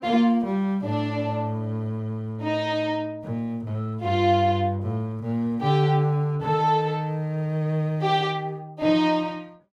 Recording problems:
none

